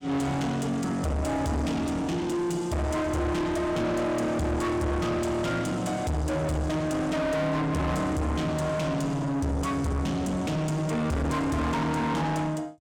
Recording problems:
distortion; soft clipping, signal-to-distortion ratio 5 dB

